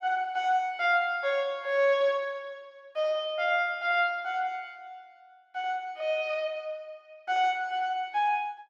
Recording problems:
none

